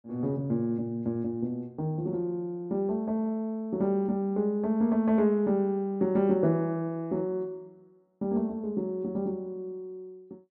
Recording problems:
none

